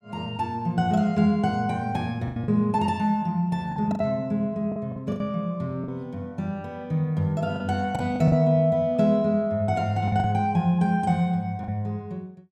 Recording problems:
packet loss; 6% of the sound replaced, filled with the last packet

